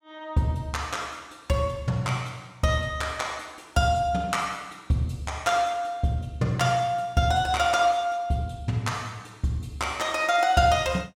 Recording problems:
none

